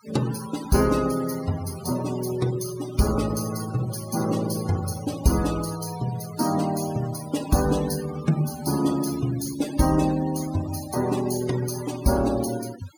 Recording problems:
denoising artefacts; signal-to-artefact ratio 14 dB

